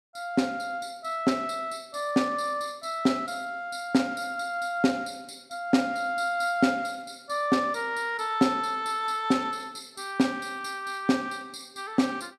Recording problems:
none

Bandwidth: 14.5 kHz